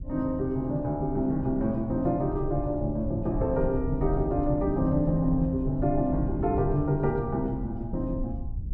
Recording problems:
low-frequency rumble; below 80 Hz, SNR 9 dB

